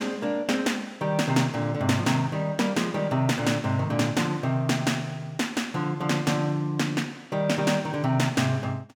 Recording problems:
none

